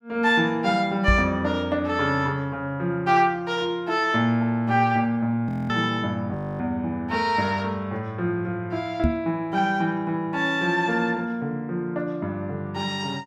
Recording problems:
microphone thump; at 1 s and at 9 s; peak +5 dB vs average level
frozen audio; at 5.5 s and at 6.5 s

